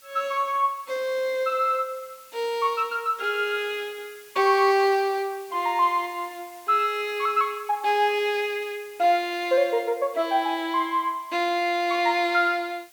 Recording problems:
background hiss; slope +2 dB per octave, SNR 25 dB

